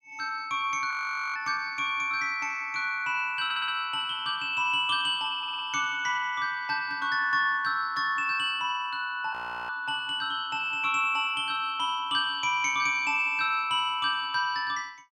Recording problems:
audio freezing; at 1 s and at 9.5 s
stutter; at 3.5 s and at 5.5 s

